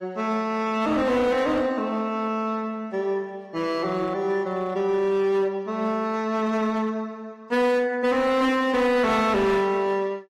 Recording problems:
codec artefacts; AAC, log-spectral distance 2 dB, nothing above 15.1 kHz
distorted audio; hard clipping, signal-to-distortion ratio 11 dB

